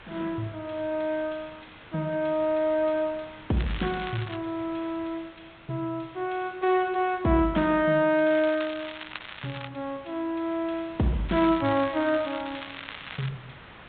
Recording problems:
treble cut off; nothing above 3.8 kHz
lossy codec; MP2, log-spectral distance 7 dB
background hiss; SNR 21 dB
crackling; at 3.5 s, from 8.5 to 9.5 s and from 11 to 13 s; loose cable, SNR 13 dB

